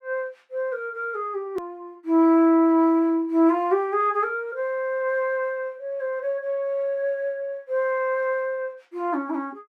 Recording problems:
edit click; at 1.5 s

